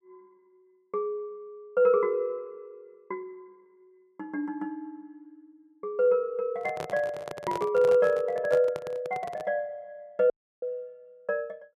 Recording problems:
handling noise; from 6.5 to 9.5 s; peak -3 dB vs average level
audio cutting out; at 10 s

